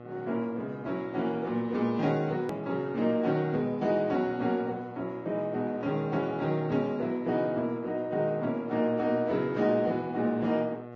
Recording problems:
codec artefacts; Vorbis, log-spectral distance 2 dB, nothing above 13.1 kHz
electrical hum; 60 Hz, harmonics up to 2 kHz, SNR 15 dB
hard cut with a click; at 2.5 s

